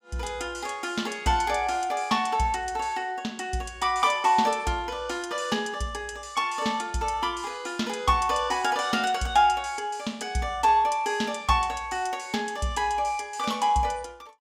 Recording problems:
none

